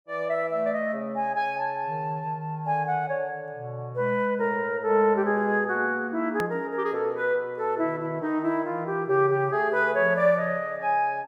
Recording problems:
click at an edit; at 6.5 s

